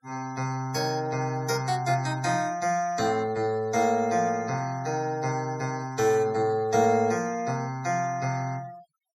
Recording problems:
noise reduction artefacts; signal-to-artefact ratio 20 dB

